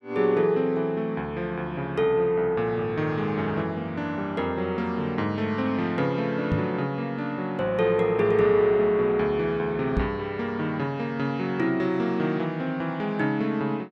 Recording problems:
knock on the microphone; at 6.5 s and at 10 s; peak +3 dB vs average level

